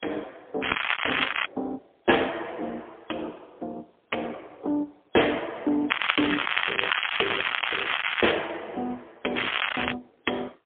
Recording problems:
phone line; 260 Hz to 3.6 kHz, AMR-NB, then MP3
crackle; at 0.5 s, from 6 to 8.5 s and at 9.5 s; loose cable, SNR -3 dB

